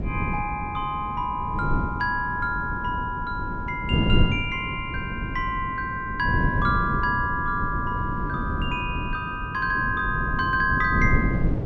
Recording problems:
wind on the microphone; below 210 Hz, SNR 3 dB

